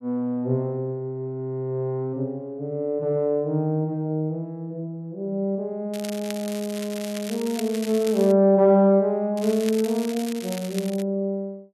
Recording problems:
crackling; from 6 to 8.5 s and from 9.5 to 11 s; loose cable, SNR 14 dB

